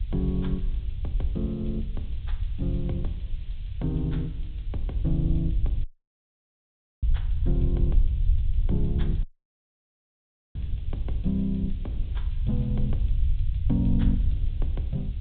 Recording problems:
treble missing; nothing above 4 kHz
hiss; SNR 27 dB
rumble; below 66 Hz, SNR -1 dB
wind noise; below 150 Hz, SNR 20 dB
dropout; at 6 s for 1 s and at 9 s for 1.5 s

